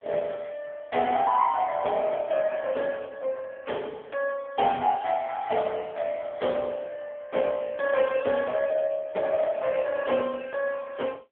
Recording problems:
telephone audio; 280 Hz to 3.4 kHz, AMR-NB

